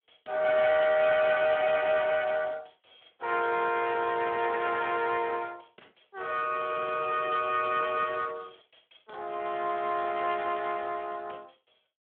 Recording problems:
phone line; 280 Hz to 3.5 kHz, Speex

